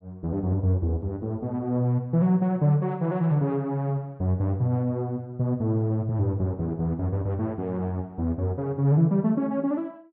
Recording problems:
none

